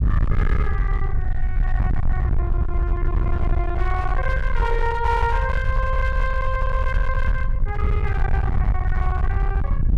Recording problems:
distorted audio; hard clipping, signal-to-distortion ratio 8 dB
low-frequency rumble; below 72 Hz, SNR -4 dB

